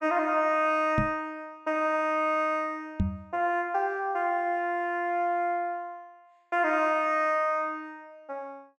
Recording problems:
microphone thump; at 1 s and at 3 s; peak +4 dB vs average level

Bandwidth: 12.5 kHz